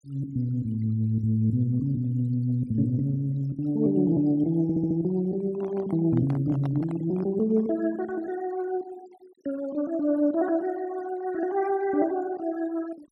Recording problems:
noise reduction artefacts; signal-to-artefact ratio 28 dB
audio stuttering; at 4.5 s
handling noise; from 5.5 to 7.5 s; peak -8 dB vs average level

